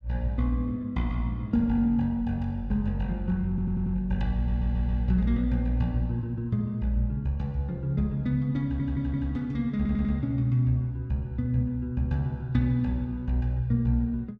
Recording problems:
stutter; 4 times, first at 3.5 s

